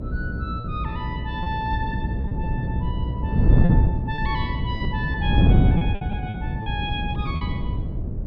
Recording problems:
hum; 60 Hz, harmonics up to 660 Hz, SNR 2 dB
wind on the microphone; below 170 Hz, SNR -7 dB
lost packets; 6% of the sound replaced, filled with repeated pitch periods

